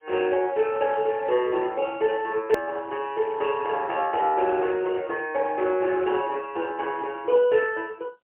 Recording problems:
phone line; 300 Hz to 3.3 kHz, AMR-NB, then MP3
edit click; at 2.5 s

